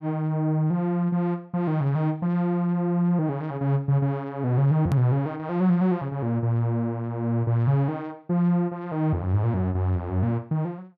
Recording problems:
edit click; at 5 s

